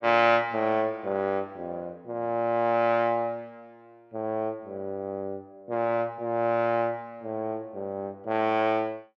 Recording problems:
none

